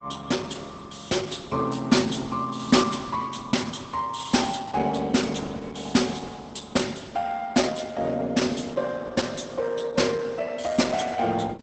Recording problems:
codec artefacts; Opus, log-spectral distance 5 dB, nothing above 8 kHz

